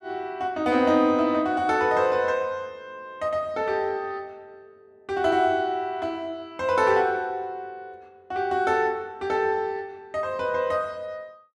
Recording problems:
none

